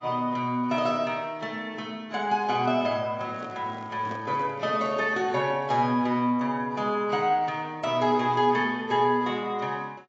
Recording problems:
codec artefacts; AAC, log-spectral distance 2 dB
handling noise; from 3 to 5.5 s; peak -9 dB vs average level

